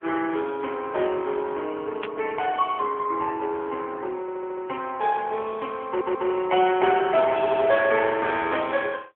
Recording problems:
telephone audio; 260 Hz to 3.4 kHz, AMR-NB
static burst; at 2 s; peak -8 dB vs average level
stutter; at 4 s, at 6 s and at 7.5 s

